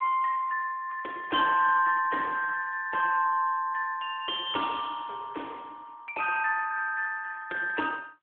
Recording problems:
telephone audio; 280 Hz to 3.4 kHz, AMR-NB

